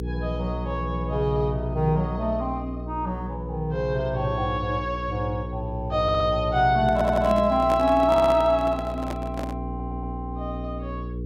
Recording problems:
hum; 60 Hz, harmonics up to 480 Hz, SNR 8 dB
stutter; 4 times, first at 6 s
handling noise; from 7 to 9.5 s; peak -3 dB vs average level

